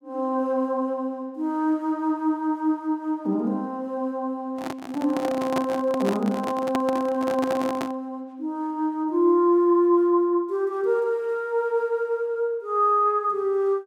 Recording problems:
microphone handling noise; from 4.5 to 8 s; peak 0 dB vs average level

